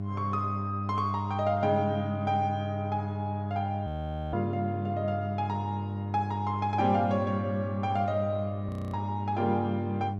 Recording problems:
mains hum; 50 Hz, harmonics up to 700 Hz, SNR 3 dB
frozen audio; at 4 s and at 8.5 s

